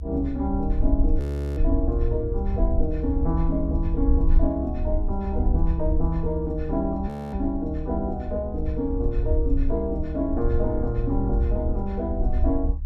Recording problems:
low-frequency rumble; below 68 Hz, SNR 0 dB
audio freezing; at 1 s and at 7 s

